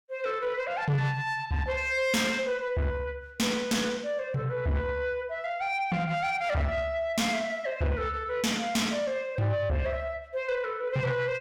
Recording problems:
distorted audio; soft clipping, signal-to-distortion ratio 8 dB

